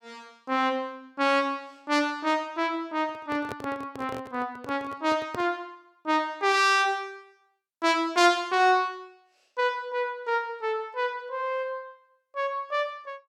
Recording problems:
handling noise; from 3 to 5.5 s; peak -5 dB vs average level

